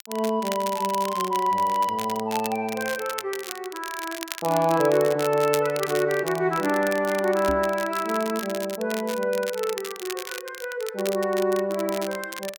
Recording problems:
crackle; vinyl, SNR 11 dB
microphone thump; at 7.5 s; peak -2 dB vs average level

